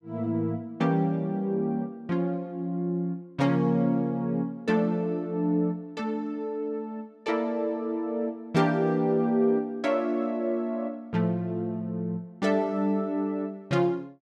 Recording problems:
none

